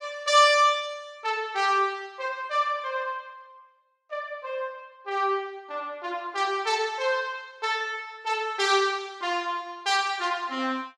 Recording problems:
none

